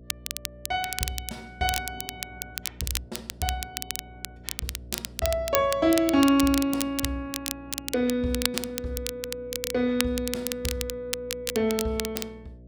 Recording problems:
electrical hum; 60 Hz, harmonics up to 660 Hz, SNR 20 dB
crackling; vinyl, SNR 6 dB

